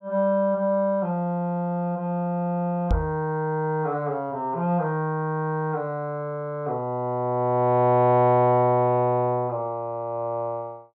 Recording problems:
microphone thump; at 3 s; peak +3 dB vs average level

